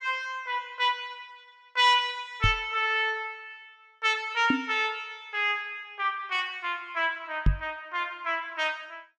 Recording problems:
microphone bump; at 2.5 s, at 4.5 s and at 7.5 s; peak +7 dB vs average level

